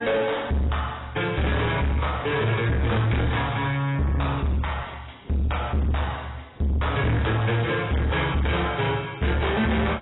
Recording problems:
lossy codec; AAC, log-spectral distance 5 dB, nothing above 3.8 kHz
distorted audio; soft clipping, signal-to-distortion ratio 7 dB

